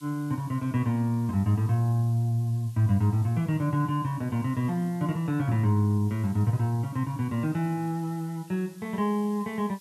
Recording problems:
background hiss; SNR 26 dB

